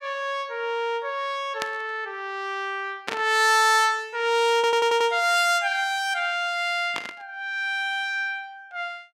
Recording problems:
static burst; at 1.5 s, at 3 s and at 7 s; peak -1 dB vs average level
stutter; at 4.5 s

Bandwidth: 16.5 kHz